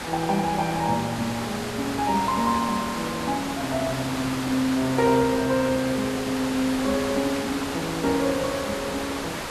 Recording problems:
hiss; slope -4 dB per octave, SNR 5 dB

